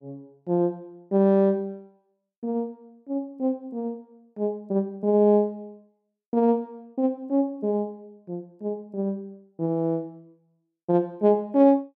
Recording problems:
none

